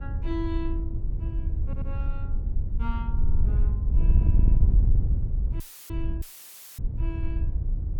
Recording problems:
wind noise; below 72 Hz, SNR -13 dB
stutter; at 1.5 s, at 3 s and at 4.5 s
dropout; at 5.5 s and at 6 s for 0.5 s; filled with static

